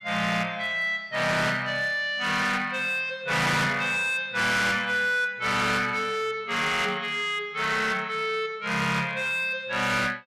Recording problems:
distortion; hard clipping, signal-to-distortion ratio 8 dB

